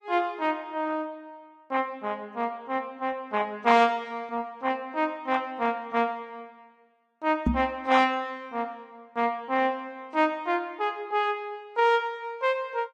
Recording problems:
lossy codec; AAC, log-spectral distance 2 dB
microphone bump; at 7.5 s; peak +7 dB vs average level

